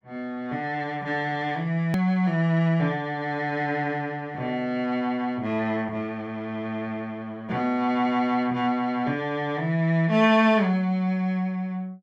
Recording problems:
hard cut with a click; at 2 s

